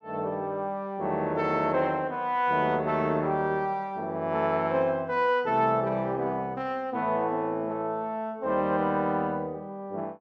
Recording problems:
none

